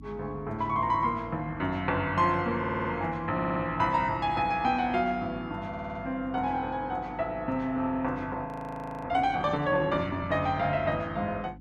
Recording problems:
hum; 50 Hz, harmonics up to 300 Hz, SNR 18 dB
audio stuttering; at 2.5 s, at 3.5 s and at 5.5 s
audio freezing; at 8.5 s for 0.5 s

